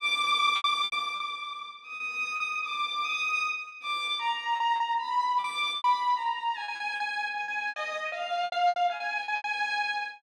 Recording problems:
packet loss; 11% of the sound replaced, filled with repeated pitch periods

